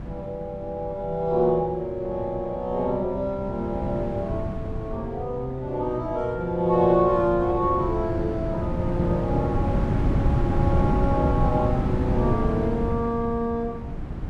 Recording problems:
wind on the microphone; below 220 Hz, SNR 2 dB

